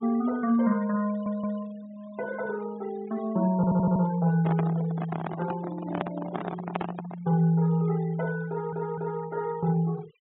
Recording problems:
treble cut off; nothing above 3.8 kHz
noise reduction artefacts; signal-to-artefact ratio 19 dB
stutter; at 1 s, at 3.5 s and at 8.5 s
microphone handling noise; from 4.5 to 7.5 s; peak +1 dB vs average level

